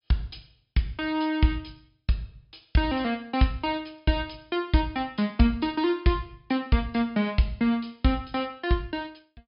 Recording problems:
low-pass filter; nothing above 5.5 kHz

